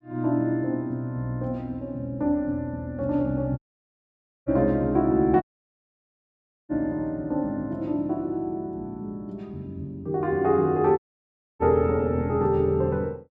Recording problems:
dropout; at 3.5 s for 1 s, at 5.5 s for 1.5 s and at 11 s for 0.5 s

